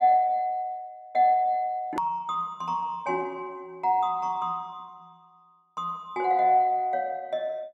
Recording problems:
hard cut with a click; at 2 s

